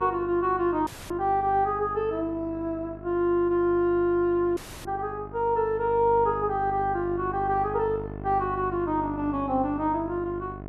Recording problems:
hum; 50 Hz, harmonics up to 1.4 kHz, SNR 14 dB
audio cutting out; at 1 s and at 4.5 s

